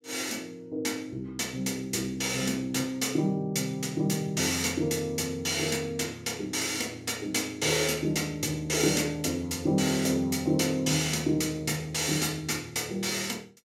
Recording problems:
none

